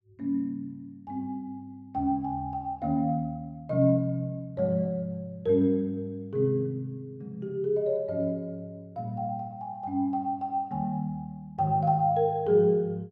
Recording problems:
none

